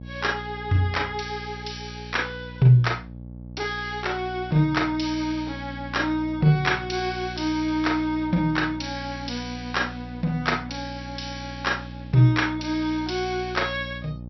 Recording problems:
low-pass filter; nothing above 5.7 kHz
mains hum; 60 Hz, harmonics up to 600 Hz, SNR 13 dB

